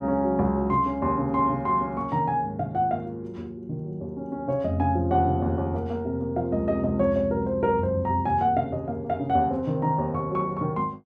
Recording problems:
none

